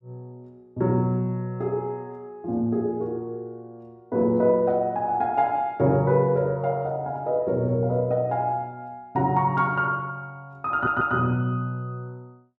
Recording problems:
audio stuttering; at 11 s

